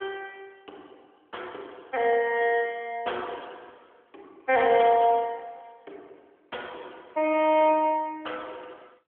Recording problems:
telephone audio; 280 Hz to 3.4 kHz, AMR-NB

